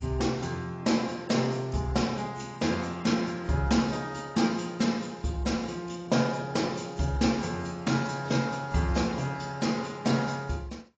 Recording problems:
codec artefacts; AAC, log-spectral distance 4 dB, nothing above 7.3 kHz

